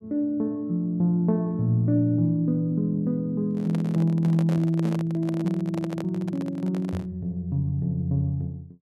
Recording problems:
handling noise; from 3.5 to 7 s; peak -7 dB vs average level

